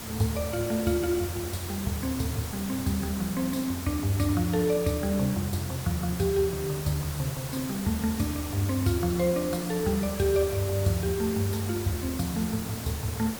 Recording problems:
hiss; slope -3 dB per octave, SNR 8 dB

